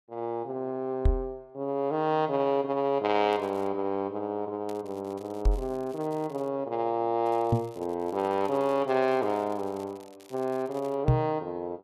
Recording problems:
knock on the microphone; 4 times, first at 1 s; peak +10 dB vs average level
crackle; at 3.5 s, from 4.5 to 6.5 s and from 7 to 11 s; loose cable, SNR 27 dB

